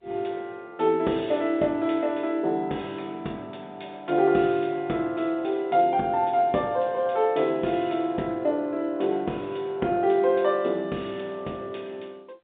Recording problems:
telephone audio; 240 Hz to 3.7 kHz, G.711

